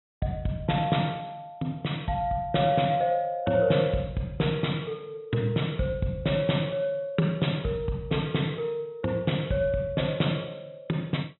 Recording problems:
treble missing; nothing above 3.9 kHz

